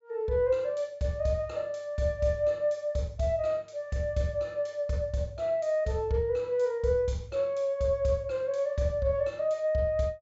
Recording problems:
treble cut off; nothing above 8 kHz

